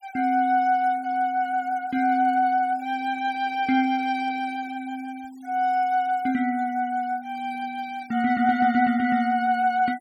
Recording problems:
noise reduction artefacts; signal-to-artefact ratio 26 dB

